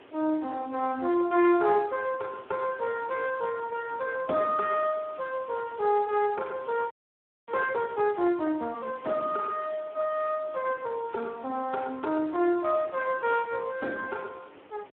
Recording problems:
phone line; 240 Hz to 3.2 kHz, Speex
hiss; SNR 27 dB
wind noise; below 950 Hz, SNR 24 dB
crackle; from 4.5 to 6 s and from 6.5 to 10 s; loose cable, SNR 29 dB
audio freezing; at 7 s for 0.5 s

